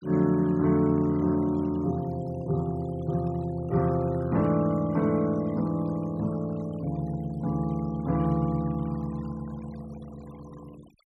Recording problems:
denoising artefacts; signal-to-artefact ratio 25 dB

